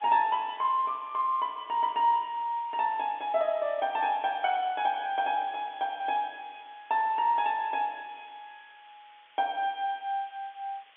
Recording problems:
telephone audio; 240 Hz to 3.6 kHz, G.711
hiss; SNR 27 dB

